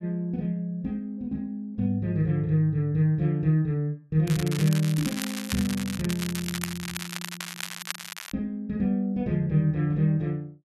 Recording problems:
crackling; from 4.5 to 8.5 s; loose cable, SNR 8 dB

